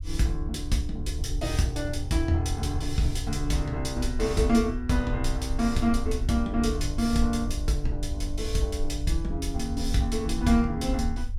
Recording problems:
low-frequency rumble; below 62 Hz, SNR 6 dB

